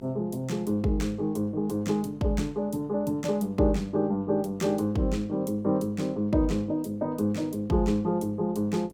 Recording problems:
mains hum; 50 Hz, harmonics up to 1.1 kHz, SNR 25 dB

